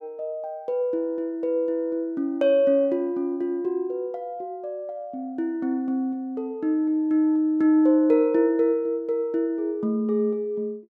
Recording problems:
none

